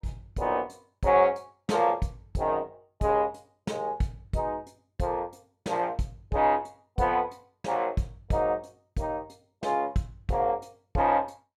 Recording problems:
none

